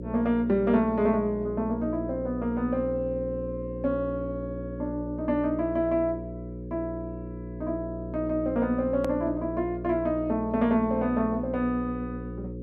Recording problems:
hum; 60 Hz, harmonics up to 540 Hz, SNR 9 dB
hard cut with a click; at 9 s

